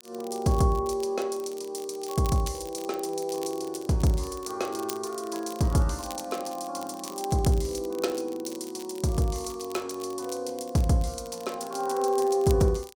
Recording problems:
crackling; vinyl, SNR 17 dB

